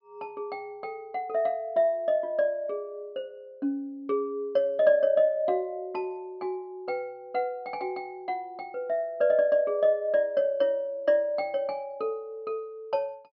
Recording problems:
low-pass filter; nothing above 5.5 kHz

